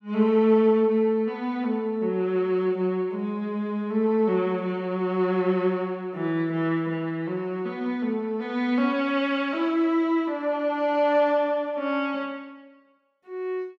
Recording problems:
none

